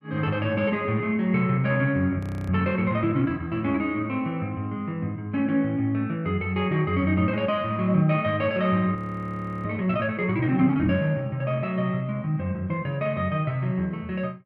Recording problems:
audio freezing; at 2 s and at 9 s for 0.5 s

